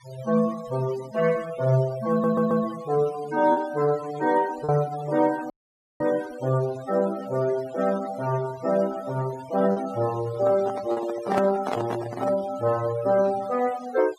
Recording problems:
denoising artefacts; signal-to-artefact ratio 17 dB
packet loss; 1.2% of the sound replaced, filled with repeated pitch periods
stutter; at 2 s
audio cutting out; at 5.5 s for 0.5 s
handling noise; from 10 to 12 s; peak +1 dB vs average level

